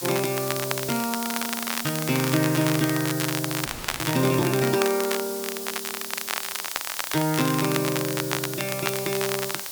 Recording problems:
hiss; SNR 6 dB
crackling; vinyl, SNR 5 dB
frozen audio; at 3.5 s

